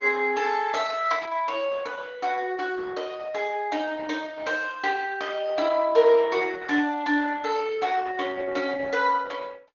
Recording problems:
treble missing; nothing above 6.7 kHz
lossy compression; Opus, log-spectral distance 4 dB

